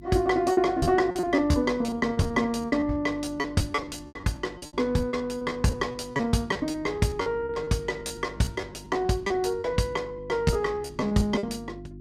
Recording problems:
hum; 50 Hz, harmonics up to 400 Hz, SNR 18 dB
lost packets; 17% of the sound replaced, filled with repeated pitch periods

